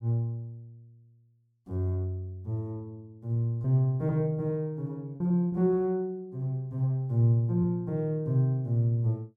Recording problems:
packet loss; 2% of the sound replaced, filled with repeated pitch periods

